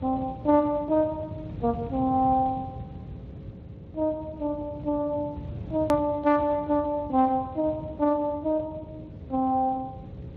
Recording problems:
lossy codec; Speex, log-spectral distance 2 dB, nothing above 13.1 kHz
electrical hum; 60 Hz, harmonics up to 540 Hz, SNR 23 dB
low-frequency rumble; below 180 Hz, SNR 13 dB
hard cut with a click; at 6 s

